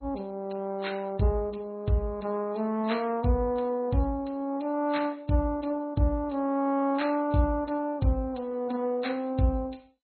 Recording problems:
lossy codec; MP3, then MP2, log-spectral distance 3 dB, nothing above 4.2 kHz

